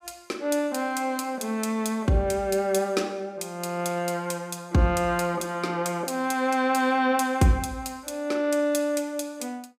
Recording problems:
none

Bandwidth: 15.5 kHz